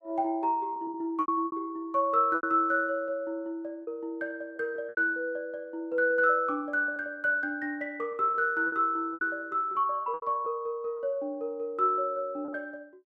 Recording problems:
packet loss; 7% of the sound replaced, filled with repeated pitch periods

